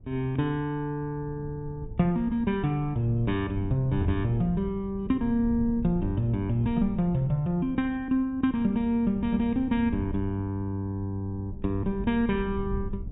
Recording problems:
treble cut off; nothing above 4 kHz
wind noise; below 120 Hz, SNR 12 dB

